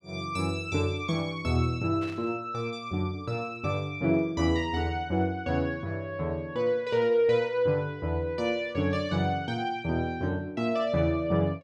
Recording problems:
static burst; at 2 s; peak -13 dB vs average level

